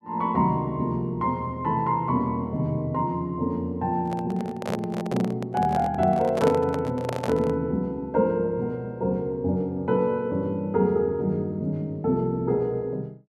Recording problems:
microphone handling noise; from 4 to 7.5 s; peak 0 dB vs average level

